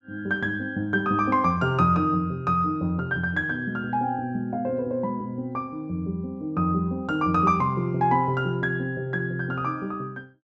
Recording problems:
none

